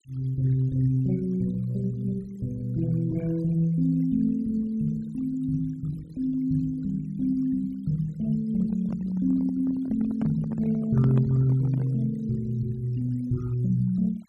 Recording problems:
denoising artefacts; signal-to-artefact ratio 26 dB
handling noise; from 8.5 to 12 s; peak -2 dB vs average level

